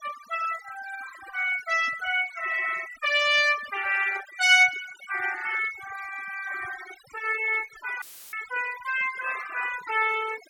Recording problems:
denoising artefacts; signal-to-artefact ratio 13 dB
audio cutting out; at 8 s; filled with static

